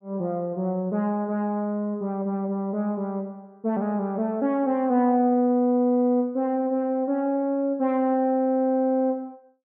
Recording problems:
none

